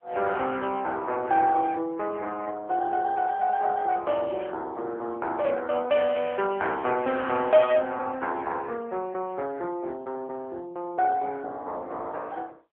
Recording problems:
phone line; 280 Hz to 3.6 kHz, AMR-NB

